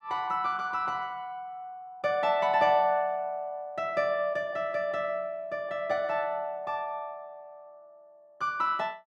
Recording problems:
none

